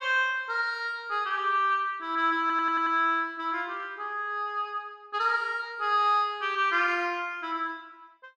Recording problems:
stutter; at 2.5 s

